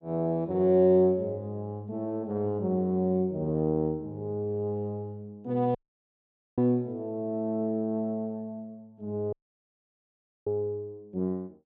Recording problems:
dropout; at 6 s for 1 s and at 9.5 s for 1 s

